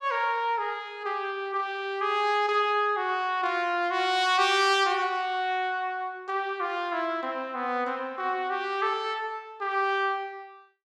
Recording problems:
none

